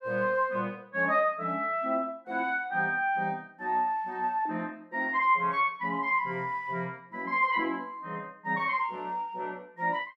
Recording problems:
none

